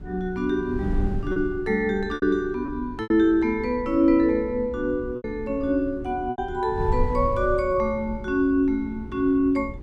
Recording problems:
electrical hum; 60 Hz, harmonics up to 420 Hz, SNR 20 dB
wind noise; below 88 Hz, SNR 13 dB
packet loss; 4% of the sound replaced, filled with repeated pitch periods

